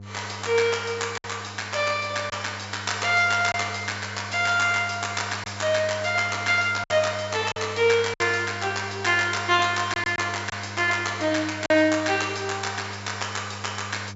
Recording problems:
low-pass filter; nothing above 8 kHz
hum; 50 Hz, harmonics up to 700 Hz, SNR 16 dB
packet loss; 3% of the sound replaced, filled with silence

